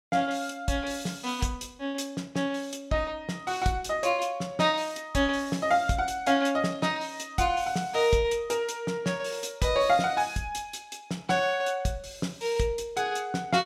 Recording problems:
none

